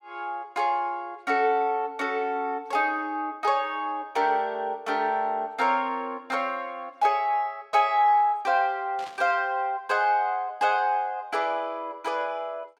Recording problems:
burst of static; at 9 s; peak -14 dB vs average level

